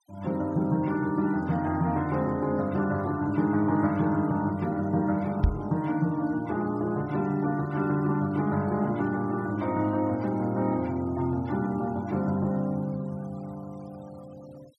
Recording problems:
denoising artefacts; signal-to-artefact ratio 26 dB
knock on the microphone; at 5.5 s; peak +8 dB vs average level

